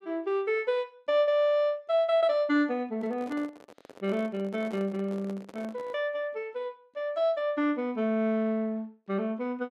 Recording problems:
handling noise; from 3 to 6 s; peak -10 dB vs average level

